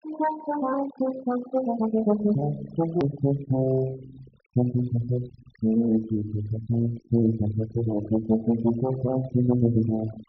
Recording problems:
treble cut off; nothing above 6 kHz
denoising artefacts; signal-to-artefact ratio 18 dB
click at an edit; at 3 s

